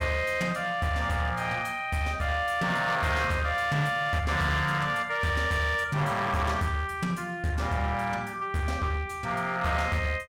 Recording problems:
distortion; hard clipping, uneven, signal-to-distortion ratio 11 dB

